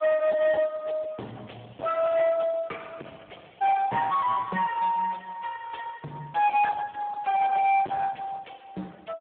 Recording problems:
phone line; 860 Hz to 3.4 kHz, Speex
distortion; soft clipping, signal-to-distortion ratio 5 dB

